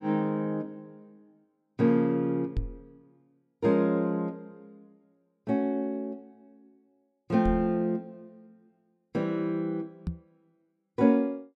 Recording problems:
microphone thump; at 2.5 s, at 7.5 s and at 10 s; peak +1 dB vs average level

